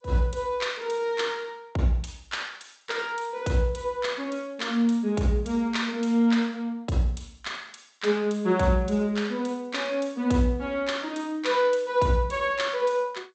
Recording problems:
lossy compression; G.722, log-spectral distance 3 dB, nothing above 8 kHz

